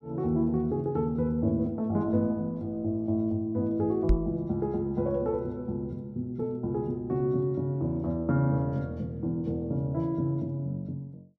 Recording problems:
microphone bump; at 4 s; peak +7 dB vs average level

